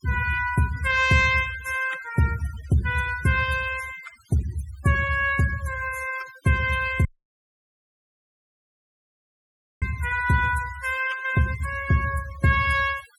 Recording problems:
noise reduction artefacts; signal-to-artefact ratio 17 dB
dropout; at 7 s for 3 s

